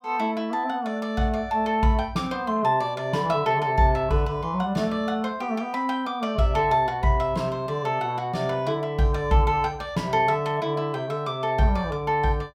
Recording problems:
none

